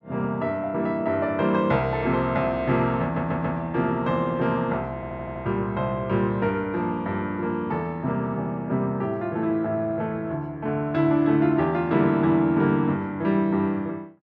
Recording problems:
stutter; at 3 s and at 5 s

